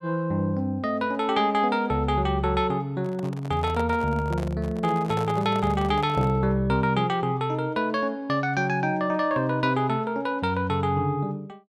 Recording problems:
handling noise; from 3 to 6.5 s; peak -5 dB vs average level

